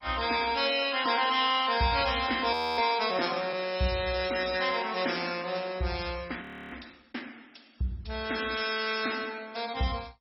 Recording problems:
lossy compression; MP3, then MP2, log-spectral distance 9 dB, nothing above 5.3 kHz
audio freezing; at 2.5 s and at 6.5 s

